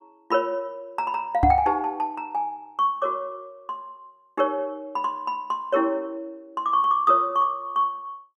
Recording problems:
microphone thump; at 1.5 s; peak +6 dB vs average level

